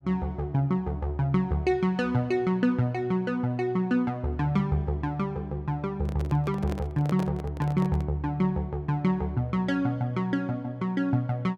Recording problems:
handling noise; from 6 to 8 s; peak -4 dB vs average level

